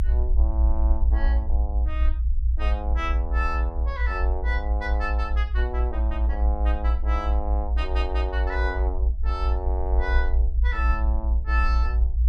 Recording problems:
rumble; below 60 Hz, strongest tone 60 Hz, SNR -7 dB

